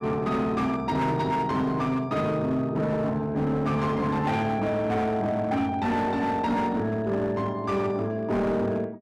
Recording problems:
distorted audio; hard clipping, signal-to-distortion ratio 11 dB

